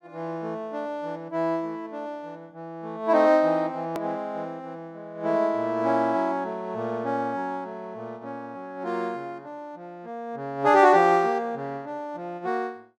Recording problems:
edit click; at 4 s

